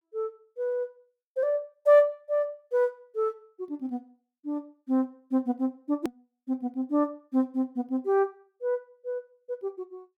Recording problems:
click at an edit; at 6 s

